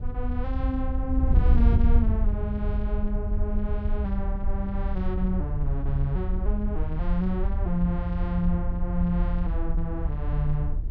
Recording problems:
wind on the microphone; below 68 Hz, SNR -3 dB

